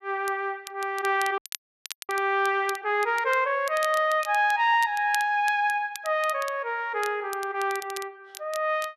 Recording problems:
crackling; vinyl, SNR 17 dB
audio freezing; at 1.5 s for 0.5 s

